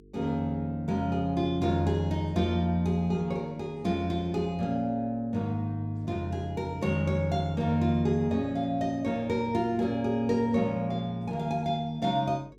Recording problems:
hum; 50 Hz, harmonics up to 450 Hz, SNR 26 dB

